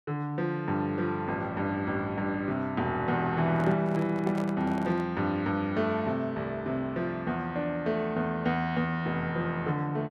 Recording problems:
handling noise; from 3.5 to 5 s; peak -5 dB vs average level

